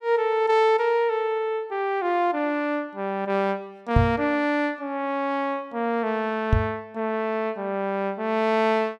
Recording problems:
knock on the microphone; at 4 s and at 6.5 s; peak +8 dB vs average level

